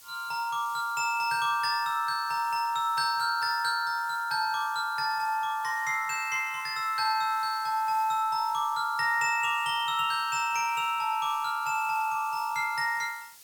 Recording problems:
background hiss; slope +2 dB per octave, SNR 21 dB

